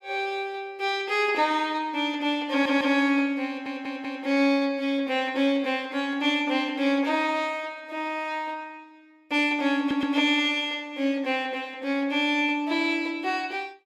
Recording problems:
stutter; at 2.5 s, at 3.5 s and at 10 s

